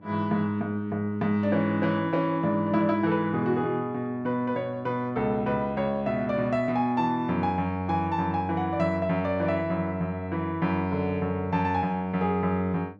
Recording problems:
electrical hum; 50 Hz, harmonics up to 1.1 kHz, SNR 25 dB

